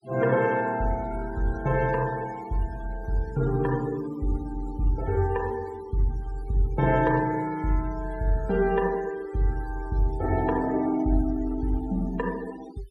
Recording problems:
denoising artefacts; signal-to-artefact ratio 19 dB

